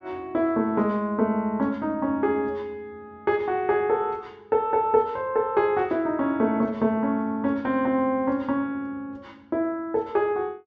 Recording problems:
treble missing; nothing above 8 kHz

